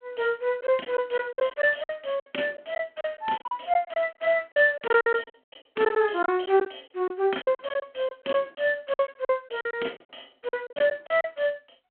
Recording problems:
telephone audio; 240 Hz to 3.3 kHz, G.726
lost packets; 14% of the sound replaced, filled with silence

